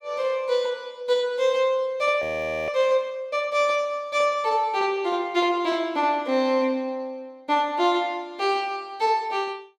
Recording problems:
audio freezing; at 2 s

